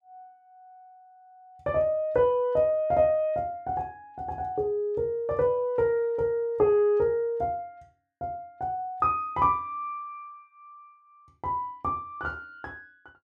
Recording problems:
none

